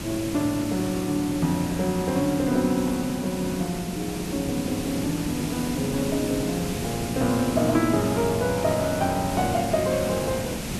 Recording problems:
background hiss; SNR 6 dB

